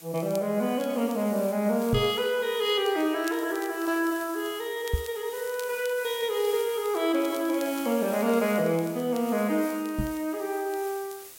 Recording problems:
background hiss; slope 0 dB per octave, SNR 15 dB
crackling; vinyl, SNR 23 dB
microphone bump; at 2 s, at 5 s and at 10 s; peak +4 dB vs average level

